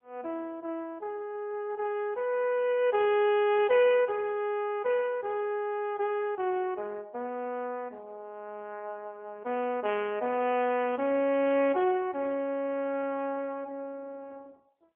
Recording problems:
telephone audio; 220 Hz to 3.3 kHz, AMR-NB

